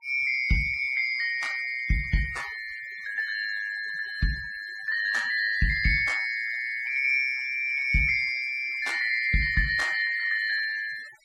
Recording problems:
noise reduction artefacts; signal-to-artefact ratio 22 dB

